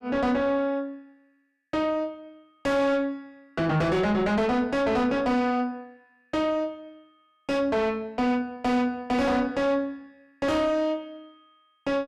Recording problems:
distortion; soft clipping, signal-to-distortion ratio 6 dB

